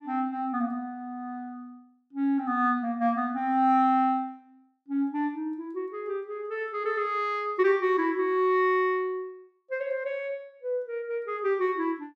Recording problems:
none

